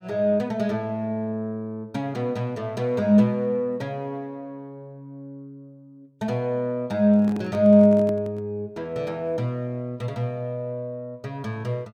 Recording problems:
microphone handling noise; from 7 to 8.5 s; peak -9 dB vs average level

